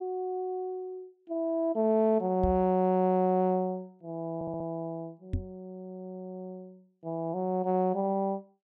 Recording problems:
microphone thump; at 2.5 s and at 5.5 s; peak +1 dB vs average level
stutter; at 4.5 s

